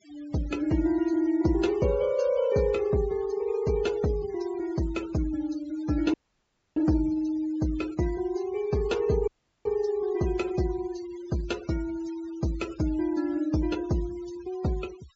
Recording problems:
treble cut off; nothing above 8 kHz
noise reduction artefacts; signal-to-artefact ratio 19 dB
audio cutting out; at 6 s for 0.5 s and at 9.5 s

